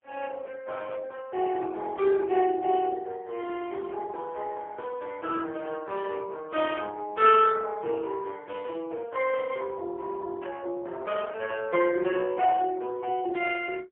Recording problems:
telephone audio; 320 Hz to 3.1 kHz, AMR-NB, then MP3

